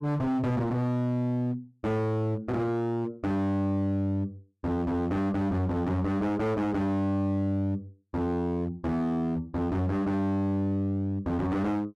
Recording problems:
distorted audio; hard clipping, signal-to-distortion ratio 7 dB

